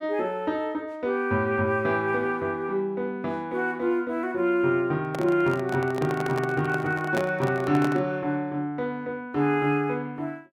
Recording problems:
handling noise; from 5 to 8 s; peak 0 dB vs average level

